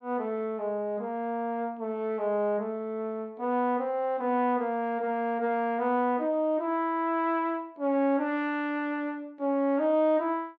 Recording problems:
none

